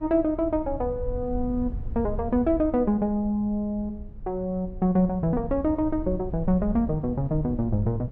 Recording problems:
rumble; below 84 Hz, SNR 11 dB

